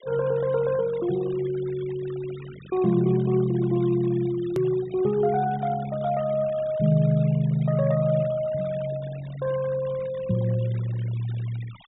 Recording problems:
treble missing; nothing above 4 kHz
noise reduction artefacts; signal-to-artefact ratio 21 dB
edit click; at 4.5 s

